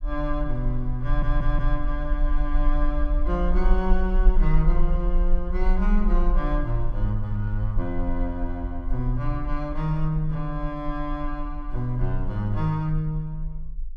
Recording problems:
rumble; below 40 Hz, strongest tone 24 Hz, SNR 0 dB
audio stuttering; at 1 s

